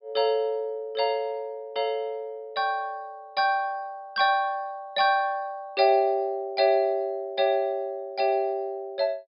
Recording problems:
treble missing; nothing above 5.5 kHz

